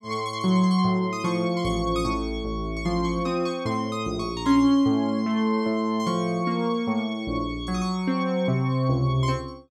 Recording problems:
none

